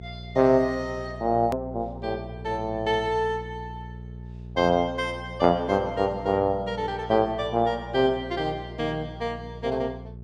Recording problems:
hum; 60 Hz, harmonics up to 480 Hz, SNR 14 dB
edit click; at 1.5 s

